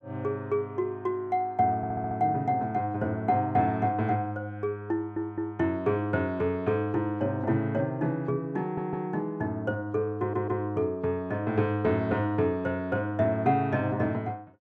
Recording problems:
stutter; 4 times, first at 2 s

